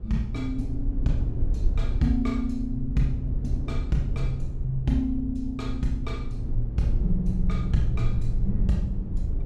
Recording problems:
rumble; below 68 Hz, SNR 2 dB

